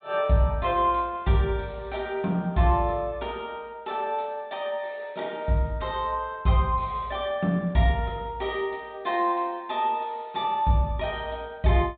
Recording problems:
treble cut off; nothing above 4 kHz

